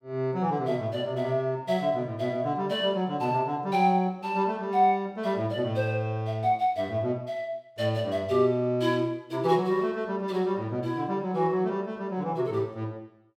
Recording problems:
none

